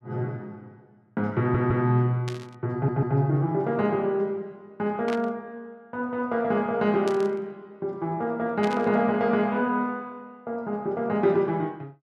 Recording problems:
audio stuttering; at 1.5 s and at 2.5 s
burst of static; 4 times, first at 2.5 s; peak -7 dB vs average level

